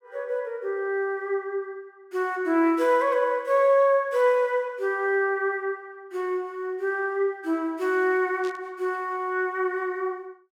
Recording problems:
static burst; at 8.5 s; peak -15 dB vs average level

